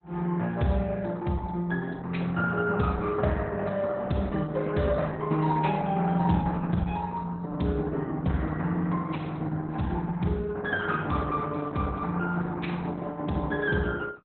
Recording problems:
codec artefacts; Opus, log-spectral distance 3 dB, nothing above 3.9 kHz

